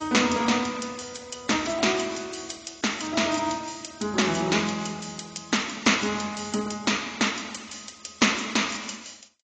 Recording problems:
lossy codec; AAC, log-spectral distance 8 dB, nothing above 7.3 kHz

